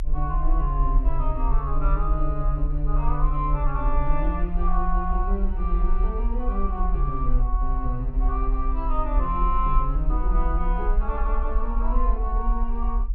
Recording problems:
low-frequency rumble; below 42 Hz, SNR -3 dB

